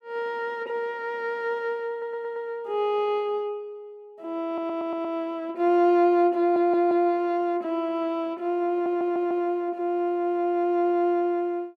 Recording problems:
audio stuttering; 4 times, first at 2 s

